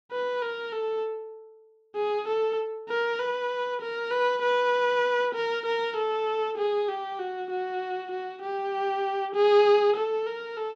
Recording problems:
none

